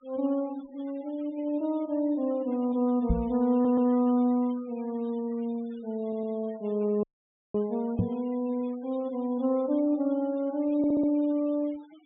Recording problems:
low-pass filter; nothing above 4 kHz
noise reduction artefacts; signal-to-artefact ratio 26 dB
microphone bump; at 3 s and at 8 s; peak +5 dB vs average level
audio stuttering; at 3.5 s, at 6 s and at 11 s
audio cutting out; at 7 s for 0.5 s

